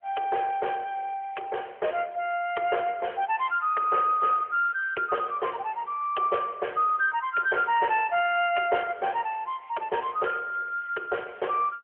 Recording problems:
telephone audio; 320 Hz to 3.2 kHz, AMR-NB

